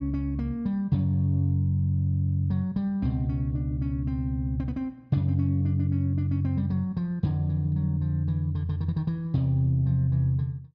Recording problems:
none

